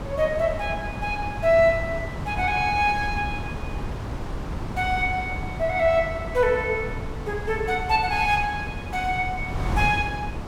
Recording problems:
wind noise; below 330 Hz, SNR 8 dB

